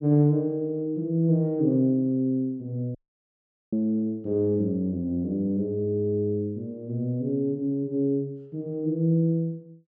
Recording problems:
dropout; at 3 s for 1 s

